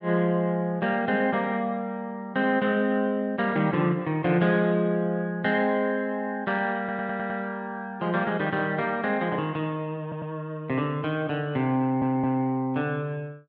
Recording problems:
stutter; at 7 s, at 10 s and at 12 s

